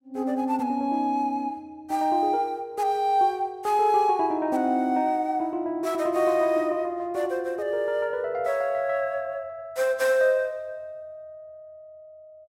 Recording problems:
none

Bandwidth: 16 kHz